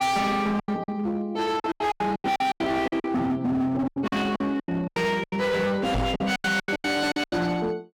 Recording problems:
distorted audio; hard clipping, signal-to-distortion ratio 8 dB
packet loss; 18% of the sound replaced, filled with silence
microphone bump; at 6 s; peak +3 dB vs average level

